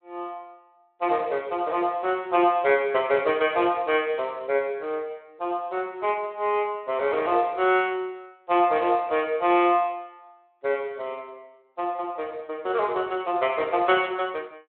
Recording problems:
telephone audio; 280 Hz to 3.7 kHz, Speex

